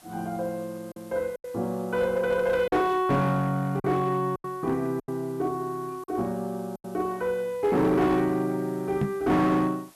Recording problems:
distortion; hard clipping, uneven, signal-to-distortion ratio 12 dB
hiss; SNR 26 dB
lost packets; 5% of the sound replaced, filled with silence
microphone thump; at 9 s; peak +4 dB vs average level

